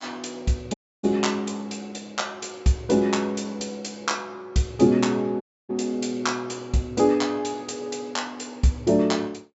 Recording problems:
low-pass filter; nothing above 8 kHz
audio cutting out; at 0.5 s and at 5.5 s

